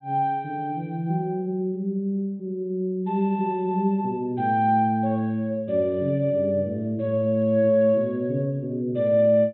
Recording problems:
low-pass filter; nothing above 3.9 kHz

